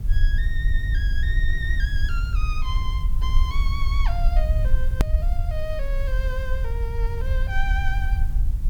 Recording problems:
hiss; slope -4 dB per octave, SNR 19 dB
rumble; below 60 Hz, SNR -8 dB
hard cut with a click; at 5 s

